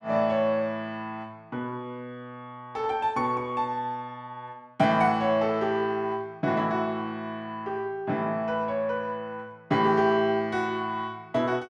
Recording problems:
none

